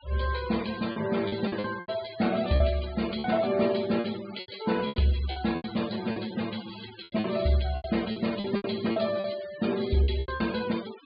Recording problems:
low-pass filter; nothing above 4.7 kHz
denoising artefacts; signal-to-artefact ratio 14 dB
lost packets; 12% of the sound replaced, filled with repeated pitch periods

